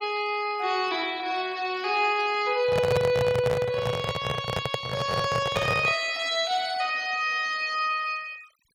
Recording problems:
noise reduction artefacts; signal-to-artefact ratio 23 dB
handling noise; from 2.5 to 6 s; peak +2 dB vs average level

